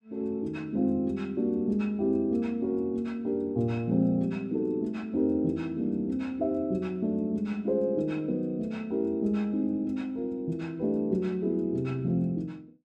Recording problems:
none

